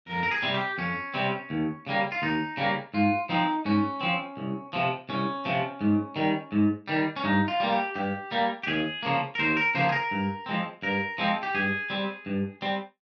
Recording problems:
none

